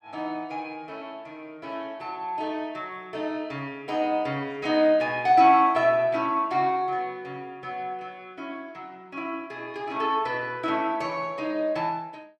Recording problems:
none

